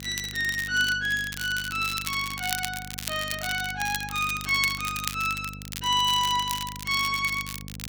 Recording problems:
electrical hum; 50 Hz, harmonics up to 550 Hz, SNR 16 dB
crackle; vinyl, SNR 9 dB

